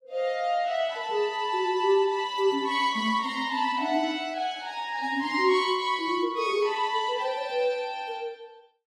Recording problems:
none

